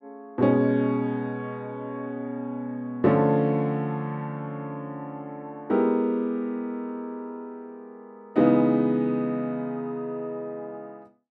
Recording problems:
none

